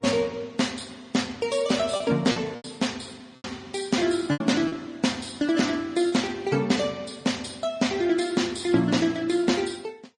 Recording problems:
codec artefacts; MP3, then Vorbis, log-spectral distance 4 dB, nothing above 8.7 kHz
lost packets; 4% of the sound replaced, filled with repeated pitch periods

